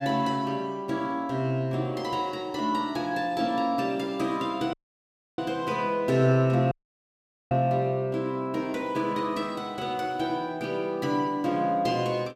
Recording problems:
audio cutting out; at 4.5 s for 0.5 s and at 6.5 s for 1 s

